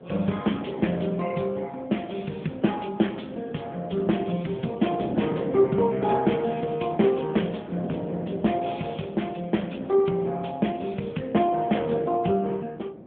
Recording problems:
telephone audio; 110 Hz to 3.5 kHz, AMR-NB
wind noise; below 500 Hz, SNR 11 dB

